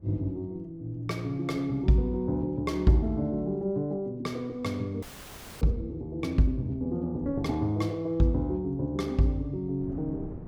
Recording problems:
wind on the microphone; below 270 Hz, SNR 21 dB
frozen audio; at 5 s for 0.5 s

